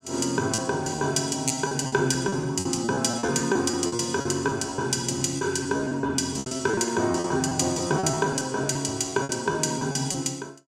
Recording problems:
packet loss; 15% of the sound replaced, filled with repeated pitch periods

